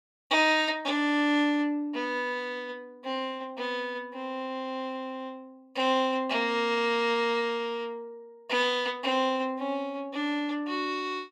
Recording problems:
none

